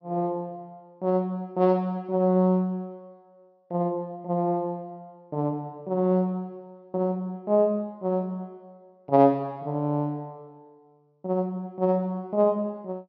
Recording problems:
treble cut off; nothing above 6 kHz

